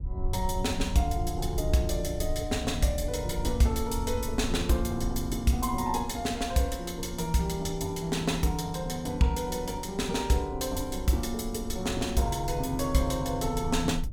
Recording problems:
rumble; below 76 Hz, SNR 9 dB

